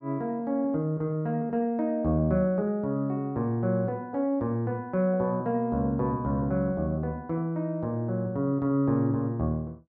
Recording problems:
none

